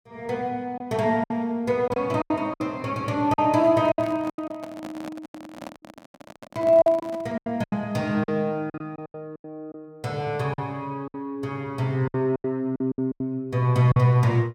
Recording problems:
packet loss; 11% of the sound replaced, filled with silence
handling noise; from 3.5 to 7.5 s; peak -9 dB vs average level

